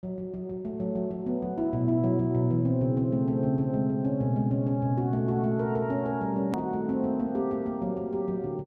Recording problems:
click at an edit; at 6.5 s

